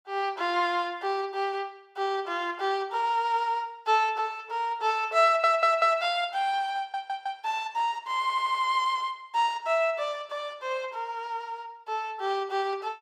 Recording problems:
audio stuttering; at 5.5 s, at 7 s and at 8 s

